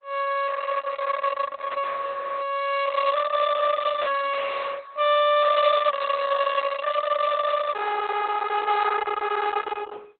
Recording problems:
codec artefacts; Opus, log-spectral distance 5 dB, nothing above 3.6 kHz

